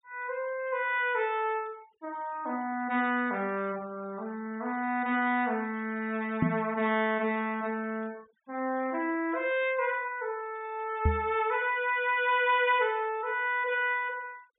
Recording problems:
treble missing; nothing above 4 kHz
denoising artefacts; signal-to-artefact ratio 27 dB
knock on the microphone; at 6.5 s and at 11 s; peak +7 dB vs average level

